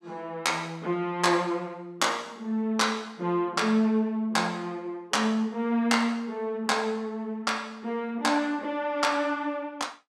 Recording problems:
none

